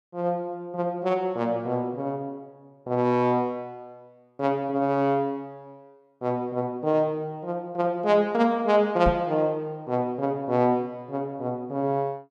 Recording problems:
microphone bump; at 9 s; peak +3 dB vs average level

